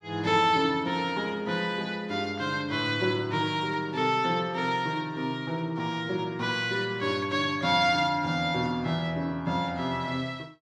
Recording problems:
none

